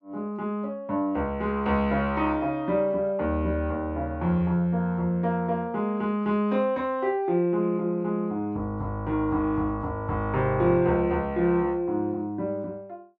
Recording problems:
none

